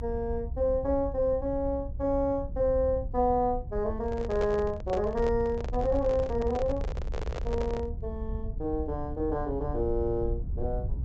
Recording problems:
treble cut off; nothing above 8 kHz
rumble; below 76 Hz, SNR 8 dB
microphone handling noise; from 4 to 8 s; peak -1 dB vs average level

